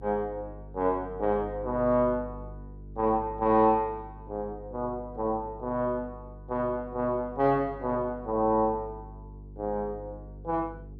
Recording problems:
electrical hum; 50 Hz, harmonics up to 450 Hz, SNR 16 dB

